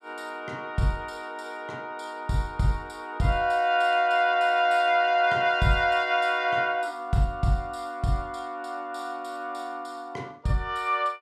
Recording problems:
none

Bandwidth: 14.5 kHz